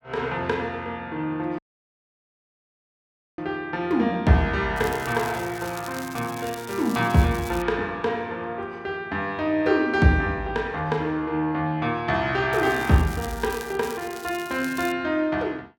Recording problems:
audio cutting out; at 1.5 s for 2 s
crackle; from 4.5 to 7.5 s and from 13 to 15 s; loose cable, SNR 16 dB

